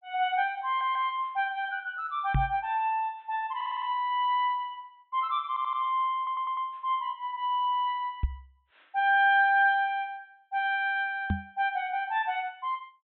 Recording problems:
treble cut off; nothing above 3.8 kHz
audio stuttering; 4 times, first at 0.5 s
microphone bump; at 2.5 s, at 8 s and at 11 s; peak +4 dB vs average level

